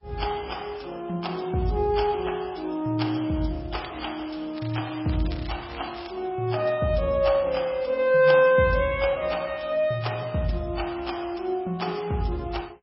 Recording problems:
lossy codec; MP3, log-spectral distance 4 dB, nothing above 5.3 kHz
crackle; at 4 s, from 4.5 to 5.5 s and at 5.5 s; loose cable, SNR 19 dB

